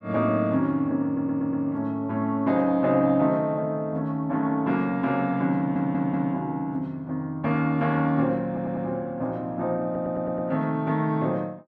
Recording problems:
stutter; 4 times, first at 1 s

